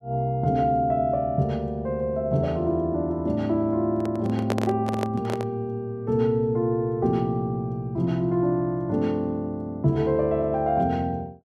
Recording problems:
microphone handling noise; from 4 to 5.5 s; peak +2 dB vs average level

